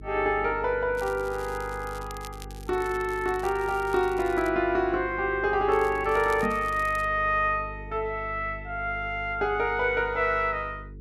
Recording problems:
hum; 50 Hz, harmonics up to 450 Hz, SNR 16 dB
crackling; from 1 to 4.5 s and from 5.5 to 7 s; loose cable, SNR 22 dB
microphone thump; at 6.5 s; peak -2 dB vs average level

